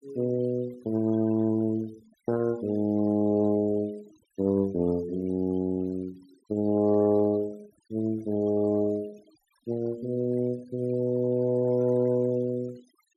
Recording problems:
noise reduction artefacts; signal-to-artefact ratio 27 dB

